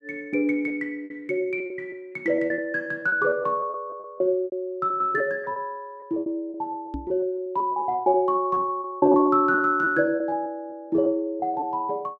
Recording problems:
lost packets; 16% of the sound replaced, filled with repeated pitch periods
knock on the microphone; at 7 s; peak -4 dB vs average level

